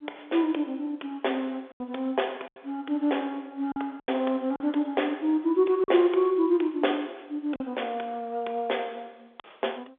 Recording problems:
telephone audio; 320 Hz to 3.9 kHz, G.711
lost packets; 5% of the sound replaced, filled with silence

